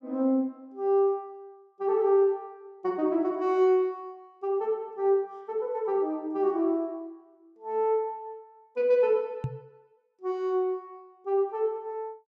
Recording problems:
knock on the microphone; at 9.5 s; peak 0 dB vs average level

